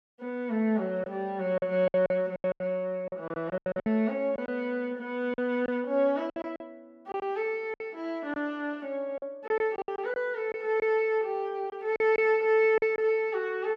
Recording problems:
lost packets; 10% of the sound replaced, filled with silence

